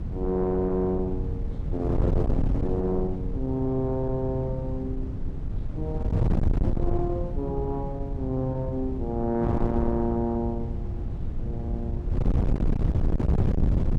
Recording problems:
distorted audio; soft clipping, signal-to-distortion ratio 11 dB
wind on the microphone; below 150 Hz, SNR 0 dB

